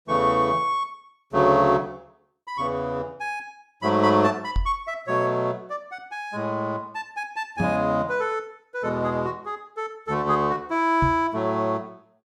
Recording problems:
knock on the microphone; at 4.5 s, at 7.5 s and at 11 s; peak +2 dB vs average level

